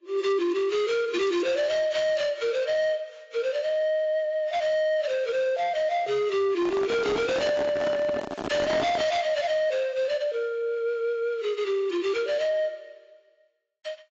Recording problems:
codec artefacts; AAC, log-spectral distance 2 dB, nothing above 7.3 kHz
distorted audio; soft clipping, signal-to-distortion ratio 10 dB
microphone handling noise; from 6.5 to 9 s; peak +1 dB vs average level

